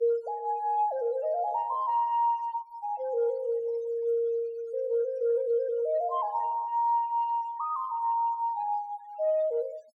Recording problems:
noise reduction artefacts; signal-to-artefact ratio 28 dB

